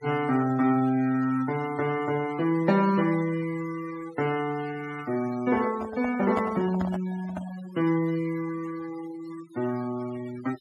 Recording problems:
noise reduction artefacts; signal-to-artefact ratio 17 dB
microphone handling noise; from 5.5 to 7.5 s; peak 0 dB vs average level

